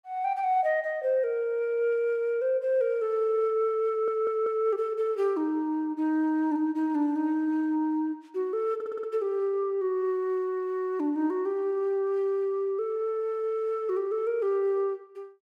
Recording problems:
stutter; at 4 s and at 9 s

